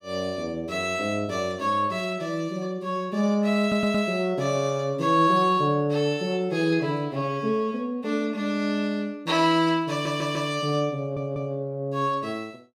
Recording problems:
audio stuttering; at 3.5 s, at 10 s and at 11 s

